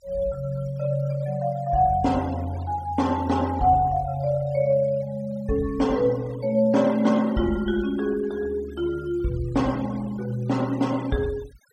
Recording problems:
denoising artefacts; signal-to-artefact ratio 22 dB

